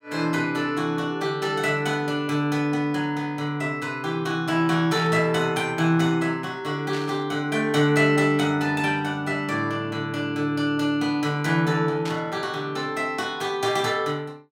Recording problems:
static burst; at 5 s, at 7 s and at 12 s; peak -7 dB vs average level

